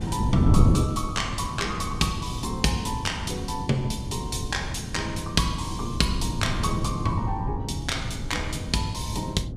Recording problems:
wind noise; below 200 Hz, SNR 1 dB

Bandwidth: 15.5 kHz